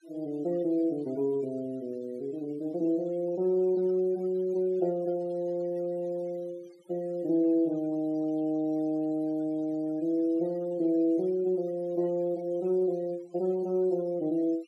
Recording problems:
noise reduction artefacts; signal-to-artefact ratio 27 dB

